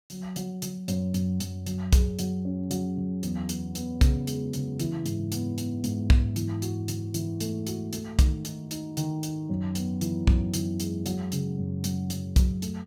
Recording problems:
none

